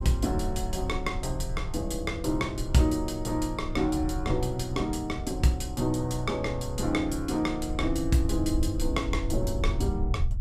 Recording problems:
rumble; below 84 Hz, SNR 6 dB

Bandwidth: 14.5 kHz